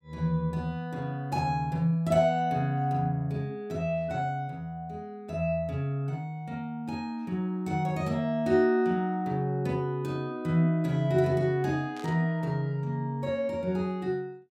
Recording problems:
static burst; at 12 s; peak -14 dB vs average level

